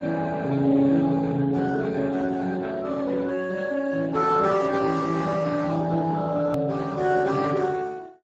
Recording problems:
lossy codec; Speex, log-spectral distance 4 dB
edit click; at 6.5 s

